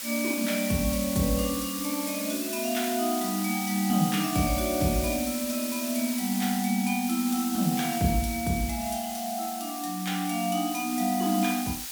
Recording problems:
background hiss; slope +3 dB per octave, SNR 5 dB

